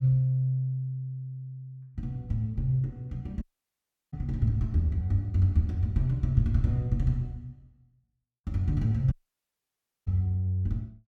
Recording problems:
dropout; at 3.5 s for 0.5 s and at 9 s for 1 s

